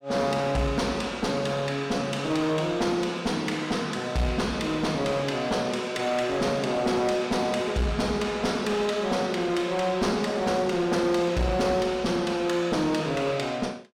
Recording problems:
distortion; hard clipping, uneven, signal-to-distortion ratio 10 dB

